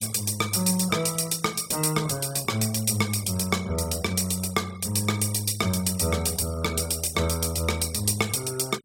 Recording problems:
denoising artefacts; signal-to-artefact ratio 20 dB

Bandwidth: 16.5 kHz